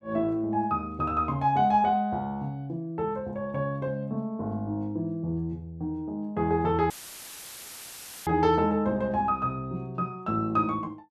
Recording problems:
dropout; at 7 s for 1.5 s; filled with static

